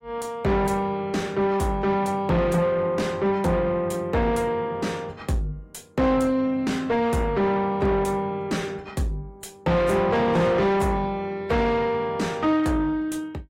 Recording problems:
lossy compression; AAC, log-spectral distance 2 dB, nothing above 16.5 kHz
distorted audio; soft clipping, signal-to-distortion ratio 8 dB

